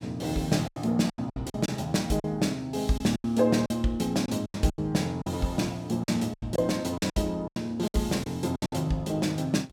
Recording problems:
lost packets; 12% of the sound replaced, filled with silence

